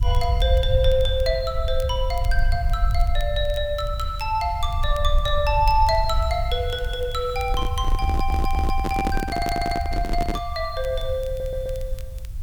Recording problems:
hiss; slope -2 dB per octave, SNR 27 dB
rumble; below 68 Hz, SNR 2 dB
crackling; vinyl, SNR 24 dB
microphone handling noise; from 7.5 to 10 s; peak +3 dB vs average level
audio stuttering; at 8 s, at 9.5 s and at 11 s

